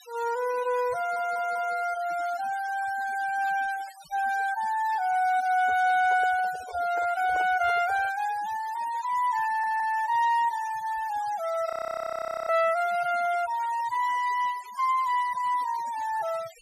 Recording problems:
noise reduction artefacts; signal-to-artefact ratio 18 dB
stutter; at 1 s and at 9.5 s
microphone handling noise; from 5.5 to 8 s; peak -8 dB vs average level
frozen audio; at 12 s for 1 s

